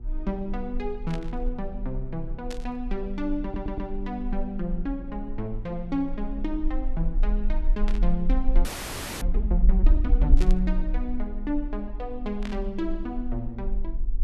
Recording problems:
hum; 60 Hz, harmonics up to 840 Hz, SNR 19 dB
low-frequency rumble; below 42 Hz, strongest tone 28 Hz, SNR -1 dB
static burst; 5 times, first at 1 s; peak -3 dB vs average level
audio stuttering; at 3.5 s
frozen audio; at 8.5 s for 0.5 s

